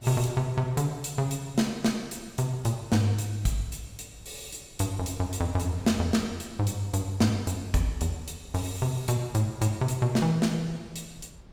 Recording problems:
wind noise; below 210 Hz, SNR 24 dB

